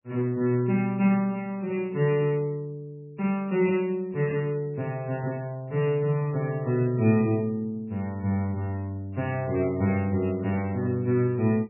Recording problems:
codec artefacts; MP3, log-spectral distance 2 dB, nothing above 2.6 kHz

